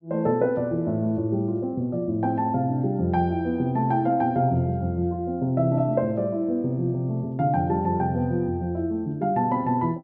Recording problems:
none

